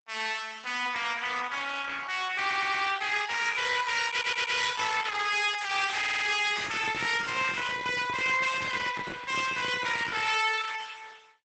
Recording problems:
lossy codec; Opus, log-spectral distance 6 dB, nothing above 8 kHz
distortion; soft clipping, signal-to-distortion ratio 10 dB
stutter; at 2.5 s, at 4 s and at 6 s
microphone handling noise; from 6.5 to 10 s; peak -7 dB vs average level

